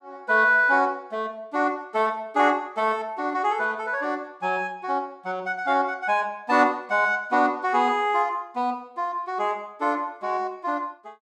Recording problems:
none

